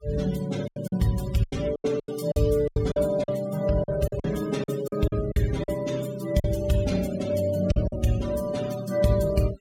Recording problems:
denoising artefacts; signal-to-artefact ratio 16 dB
lost packets; 10% of the sound replaced, filled with silence

